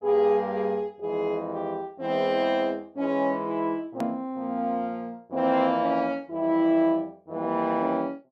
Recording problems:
hard cut with a click; at 4 s

